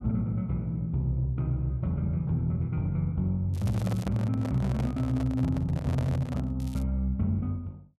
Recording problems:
handling noise; from 3.5 to 6.5 s; peak -5 dB vs average level
crackling; at 3.5 s and at 6.5 s; loose cable, SNR 23 dB

